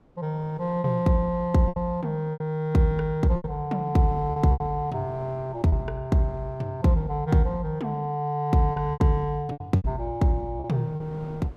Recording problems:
wind noise; below 500 Hz, SNR 24 dB
packet loss; 7% of the sound replaced, filled with repeated pitch periods

